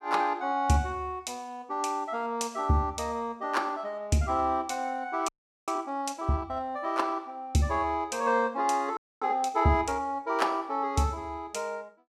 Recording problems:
frozen audio; at 5.5 s and at 9 s

